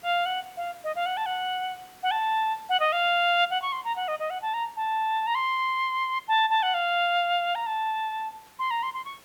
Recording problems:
background hiss; slope -3 dB per octave, SNR 26 dB

